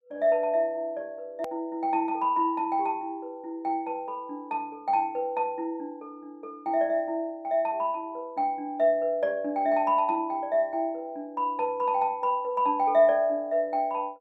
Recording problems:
hard cut with a click; at 1.5 s

